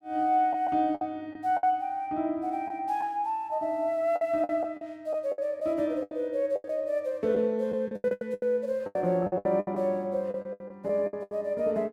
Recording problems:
lost packets; 13% of the sound replaced, filled with the last packet

